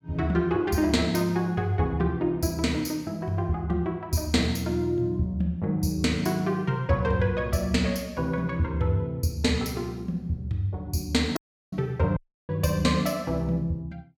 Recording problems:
audio cutting out; at 11 s and at 12 s

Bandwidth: 18 kHz